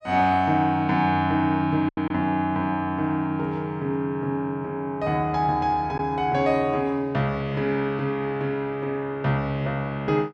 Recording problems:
lost packets; 1.1% of the sound replaced, filled with silence

